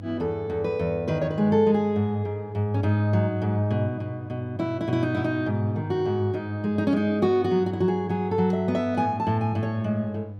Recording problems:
mains hum; 50 Hz, harmonics up to 500 Hz, SNR 15 dB

